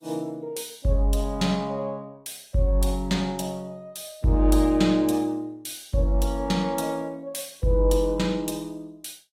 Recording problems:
lossy codec; AAC, log-spectral distance 3 dB, nothing above 14.7 kHz

